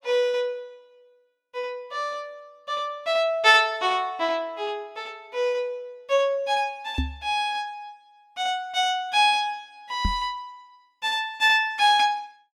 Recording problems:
microphone bump; at 7 s and at 10 s; peak +1 dB vs average level

